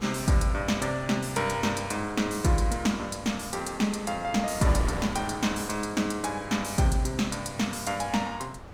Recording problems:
wind noise; below 950 Hz, SNR 14 dB

